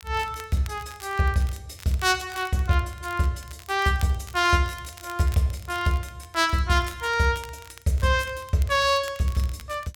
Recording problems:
crackling; vinyl, SNR 21 dB

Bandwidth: 17.5 kHz